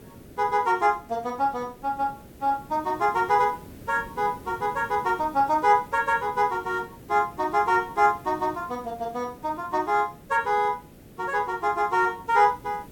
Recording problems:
background hiss; SNR 21 dB

